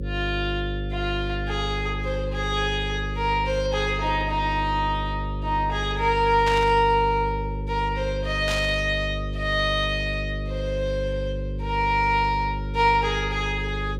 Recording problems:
hum; 50 Hz, harmonics up to 550 Hz, SNR 6 dB
static burst; at 6.5 s and at 8.5 s; peak -2 dB vs average level

